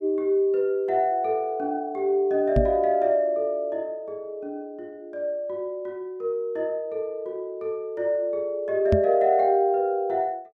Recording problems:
microphone thump; at 2.5 s and at 9 s; peak +5 dB vs average level

